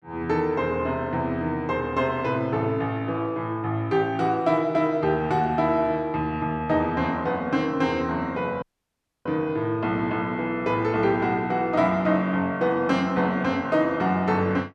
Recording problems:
dropout; at 8.5 s for 0.5 s

